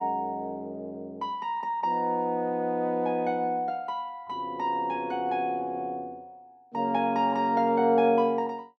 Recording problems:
none

